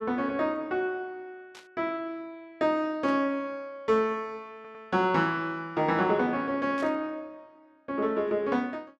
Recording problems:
burst of static; at 1.5 s, at 3 s and at 7 s; peak -14 dB vs average level
audio stuttering; at 4.5 s

